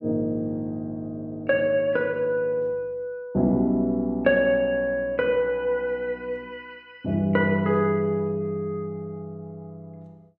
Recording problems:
none

